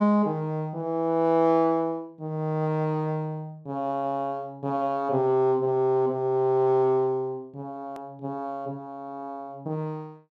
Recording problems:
click at an edit; at 8 s

